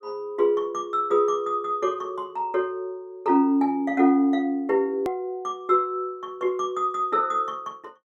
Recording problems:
click at an edit; at 5 s

